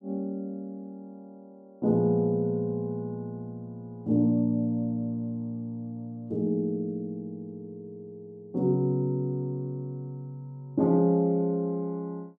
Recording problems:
none

